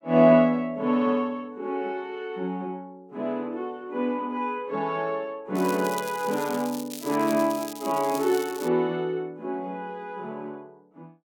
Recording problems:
crackling; from 5.5 to 8.5 s; loose cable, SNR 14 dB

